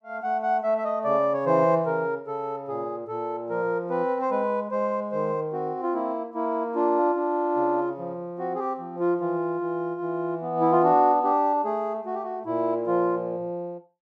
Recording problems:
none

